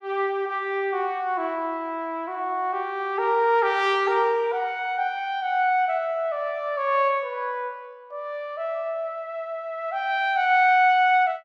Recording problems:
none

